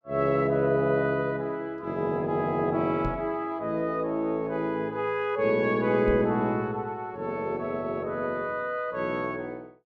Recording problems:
microphone thump; at 3 s and at 6 s; peak -2 dB vs average level

